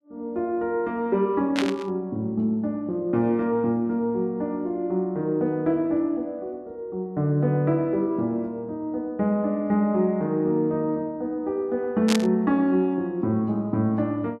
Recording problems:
burst of static; at 1.5 s and at 12 s; peak +2 dB vs average level

